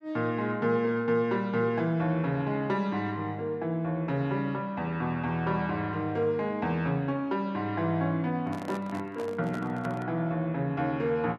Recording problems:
microphone handling noise; from 8.5 to 10 s; peak -6 dB vs average level

